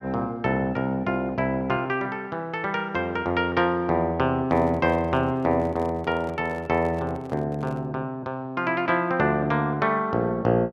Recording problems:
handling noise; from 4.5 to 8 s; peak -11 dB vs average level

